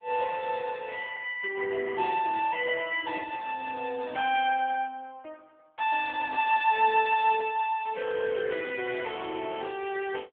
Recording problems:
telephone audio; 340 Hz to 3.5 kHz, AMR-NB

